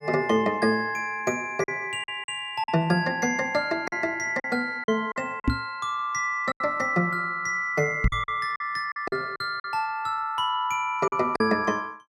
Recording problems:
lost packets; 7% of the sound replaced, filled with silence
microphone bump; at 5.5 s and at 8 s; peak +6 dB vs average level

